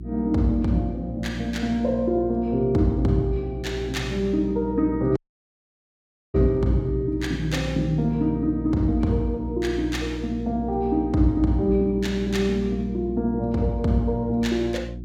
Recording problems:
electrical hum; 60 Hz, harmonics up to 360 Hz, SNR 10 dB
dropout; at 5 s for 1 s

